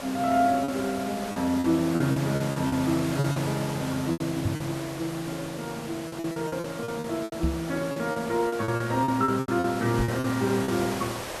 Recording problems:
background hiss; SNR 9 dB
packet loss; 12% of the sound replaced, filled with repeated pitch periods
microphone thump; at 4.5 s, at 7.5 s and at 10 s; peak +4 dB vs average level

